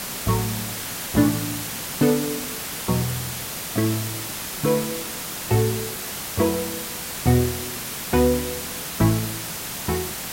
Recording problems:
hiss; slope -1 dB per octave, SNR 4 dB

